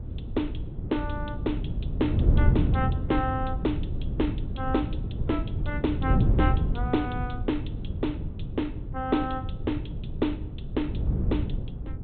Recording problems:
treble missing; nothing above 4 kHz
wind on the microphone; below 130 Hz, SNR -1 dB

